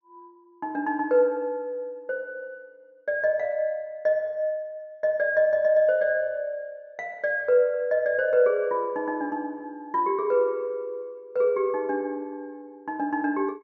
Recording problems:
treble missing; nothing above 6.7 kHz

